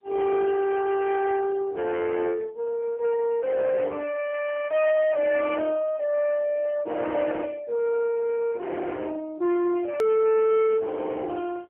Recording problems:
phone line; 240 Hz to 2.8 kHz, AMR-NB, then MP3
distortion; soft clipping, signal-to-distortion ratio 7 dB
edit click; at 10 s

